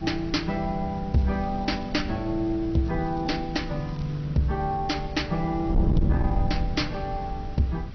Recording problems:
treble missing; nothing above 5.7 kHz
codec artefacts; AAC, log-spectral distance 3 dB
distortion; soft clipping, signal-to-distortion ratio 11 dB
background hiss; SNR 22 dB
wind noise; below 130 Hz, SNR 5 dB
crackling; at 1 s and from 3 to 4 s; loose cable, SNR 29 dB

